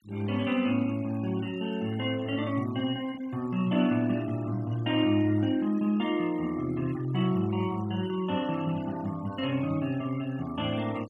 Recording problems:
denoising artefacts; signal-to-artefact ratio 20 dB

